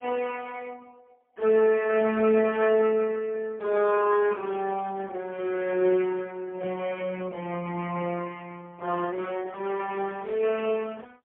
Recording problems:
phone line; 240 Hz to 3.2 kHz, AMR-NB, then MP3

